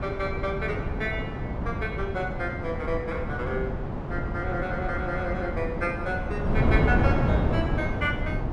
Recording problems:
wind on the microphone; below 330 Hz, SNR -2 dB

